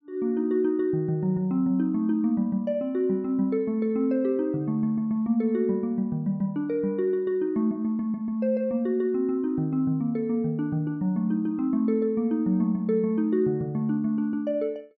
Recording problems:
none

